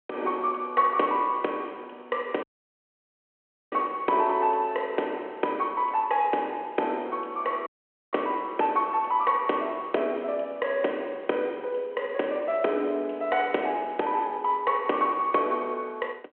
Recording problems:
phone line; 260 Hz to 3.2 kHz, G.726
audio cutting out; at 2.5 s for 1.5 s and at 7.5 s

